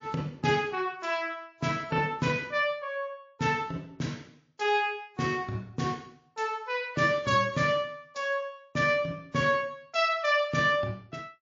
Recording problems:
lossy codec; MP3, log-spectral distance 2 dB, nothing above 6.2 kHz

